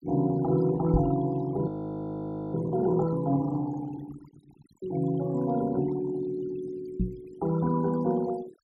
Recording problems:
noise reduction artefacts; signal-to-artefact ratio 19 dB
microphone bump; at 1 s and at 7 s; peak +4 dB vs average level
audio freezing; at 1.5 s for 1 s

